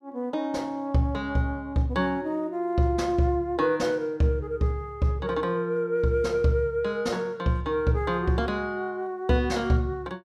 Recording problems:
none

